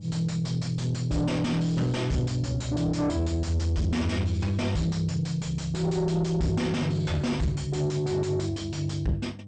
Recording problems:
codec artefacts; MP2, log-spectral distance 2 dB, nothing above 8.5 kHz
distorted audio; soft clipping, signal-to-distortion ratio 6 dB
hum; 50 Hz, harmonics up to 500 Hz, SNR 18 dB

